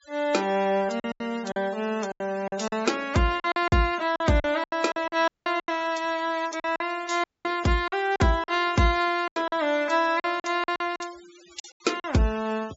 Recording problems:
treble missing; nothing above 8 kHz
denoising artefacts; signal-to-artefact ratio 20 dB
lost packets; 12% of the sound replaced, filled with silence
audio cutting out; at 5.5 s and at 7 s

